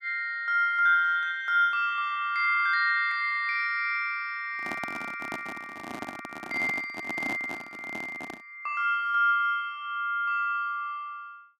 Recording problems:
handling noise; from 4.5 to 8.5 s; peak -5 dB vs average level

